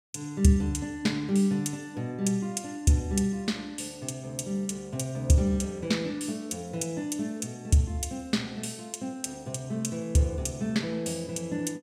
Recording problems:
none

